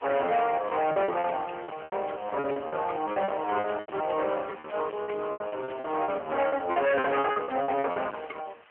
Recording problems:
phone line; 280 Hz to 3.1 kHz, AMR-NB
distorted audio; hard clipping, signal-to-distortion ratio 7 dB
hiss; SNR 27 dB
lost packets; 15% of the sound replaced, filled with repeated pitch periods

